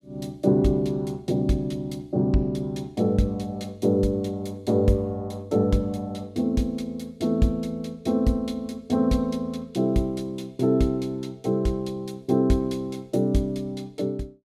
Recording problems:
none

